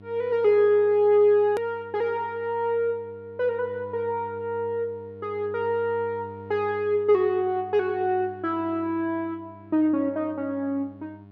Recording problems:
mains hum; 50 Hz, harmonics up to 1.1 kHz, SNR 22 dB
hard cut with a click; at 1.5 s

